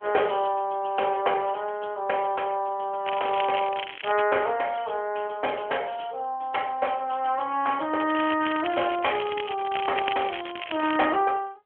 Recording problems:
telephone audio; 280 Hz to 3.3 kHz, AMR-NB
crackle; from 3 to 4 s and from 8 to 11 s; loose cable, SNR 9 dB

